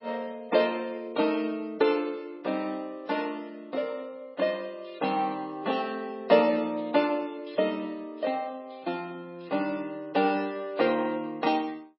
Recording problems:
lossy codec; MP3, log-spectral distance 2 dB, nothing above 4.8 kHz

